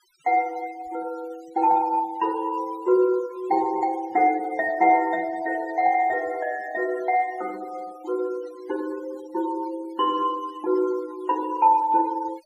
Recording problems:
noise reduction artefacts; signal-to-artefact ratio 23 dB

